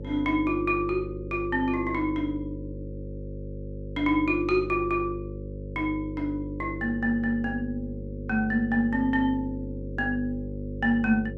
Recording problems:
hum; 50 Hz, harmonics up to 550 Hz, SNR 10 dB

